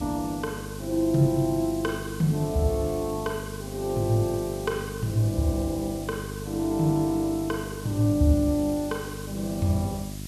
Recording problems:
electrical hum; 50 Hz, harmonics up to 700 Hz, SNR 11 dB
background hiss; slope +3 dB per octave, SNR 16 dB

